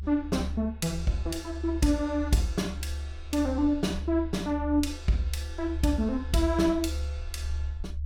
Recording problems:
low-frequency rumble; below 74 Hz, strongest tone 72 Hz, SNR 8 dB

